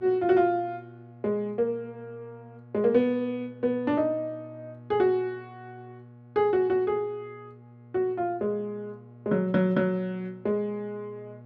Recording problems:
electrical hum; 60 Hz, harmonics up to 1.1 kHz, SNR 22 dB

